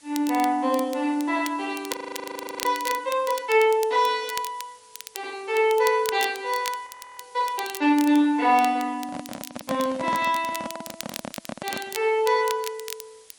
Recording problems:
lossy codec; MP3, log-spectral distance 5 dB
hiss; SNR 28 dB
crackling; vinyl, SNR 14 dB
audio freezing; at 2 s for 0.5 s and at 7 s
microphone handling noise; from 9 to 12 s; peak -3 dB vs average level

